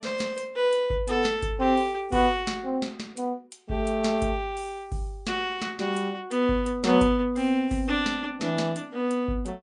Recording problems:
lossy codec; MP3, log-spectral distance 2 dB

